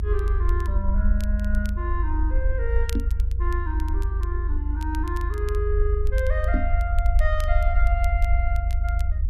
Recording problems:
hum; 50 Hz, harmonics up to 500 Hz, SNR 19 dB
rumble; below 60 Hz, SNR -7 dB
crackle; vinyl, SNR 17 dB
microphone thump; at 3 s and at 6.5 s; peak +7 dB vs average level

